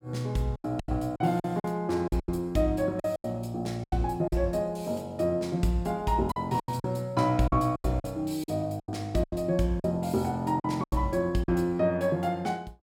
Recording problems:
packet loss; 11% of the sound replaced, filled with silence

